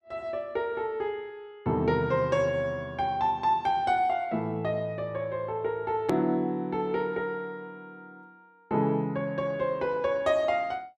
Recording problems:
click at an edit; at 6 s

